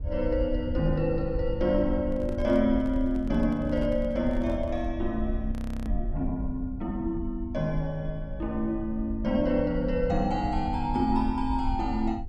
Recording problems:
low-frequency rumble; below 72 Hz, SNR 7 dB
handling noise; from 2 to 5 s; peak -9 dB vs average level
audio freezing; at 5.5 s

